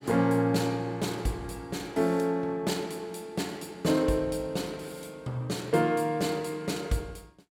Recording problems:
none

